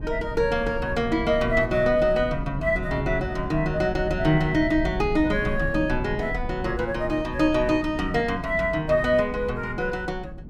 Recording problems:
wind noise; below 180 Hz, SNR 10 dB

